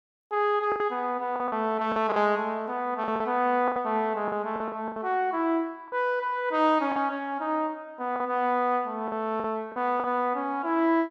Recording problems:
lost packets; 8% of the sound replaced, filled with the last packet

